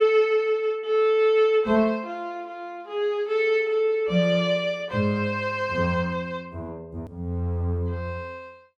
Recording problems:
hard cut with a click; at 7 s

